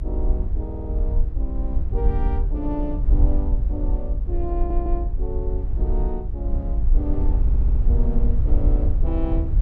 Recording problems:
rumble; below 56 Hz, SNR -8 dB
stutter; at 0.5 s, at 4.5 s and at 7.5 s

